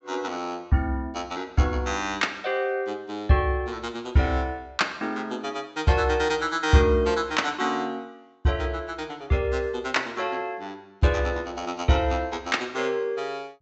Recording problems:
treble cut off; nothing above 7.8 kHz

